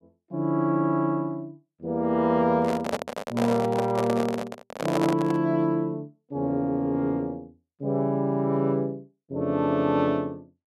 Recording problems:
microphone handling noise; from 2.5 to 5.5 s; peak +2 dB vs average level

